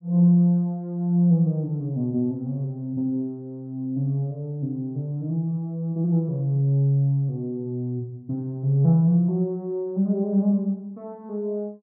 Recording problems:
none

